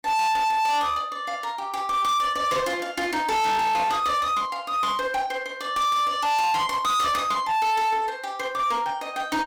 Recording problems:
distortion; hard clipping, uneven, signal-to-distortion ratio 6 dB

